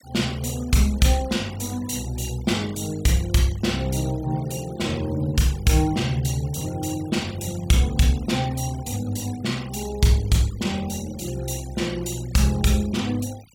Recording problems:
noise reduction artefacts; signal-to-artefact ratio 19 dB

